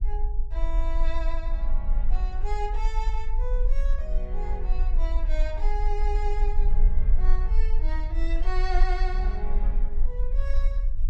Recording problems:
rumble; below 38 Hz, strongest tone 20 Hz, SNR -9 dB

